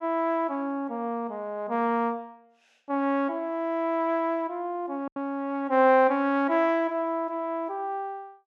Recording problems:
lost packets; 1% of the sound replaced, filled with silence

